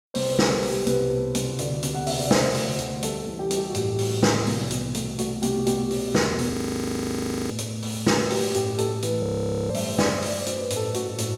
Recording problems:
frozen audio; at 6.5 s for 1 s and at 9 s

